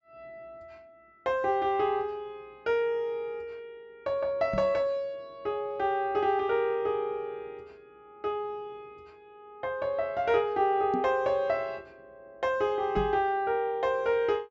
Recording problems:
treble missing; nothing above 8 kHz
microphone thump; at 4.5 s, at 11 s and at 13 s; peak -1 dB vs average level

